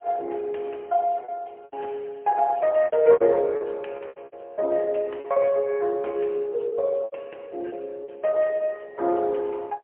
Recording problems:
phone line; 300 Hz to 3.2 kHz, AMR-NB, then MP3
packet loss; 9% of the sound replaced, filled with repeated pitch periods

